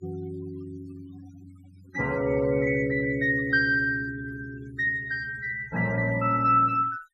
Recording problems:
noise reduction artefacts; signal-to-artefact ratio 20 dB

